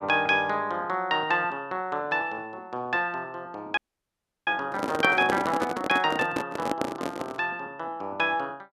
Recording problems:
frozen audio; at 4 s for 0.5 s
handling noise; from 4.5 to 7.5 s; peak +3 dB vs average level

